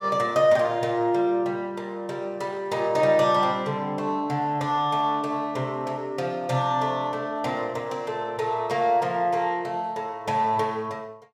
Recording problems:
none

